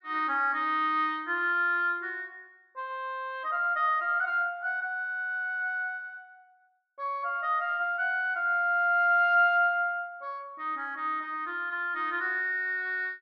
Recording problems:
none

